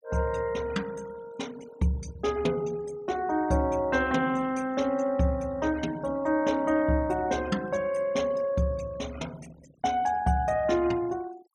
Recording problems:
noise reduction artefacts; signal-to-artefact ratio 22 dB

